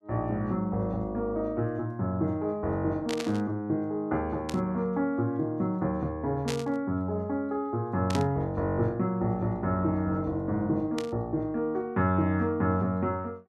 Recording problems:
static burst; 5 times, first at 3 s; peak -2 dB vs average level

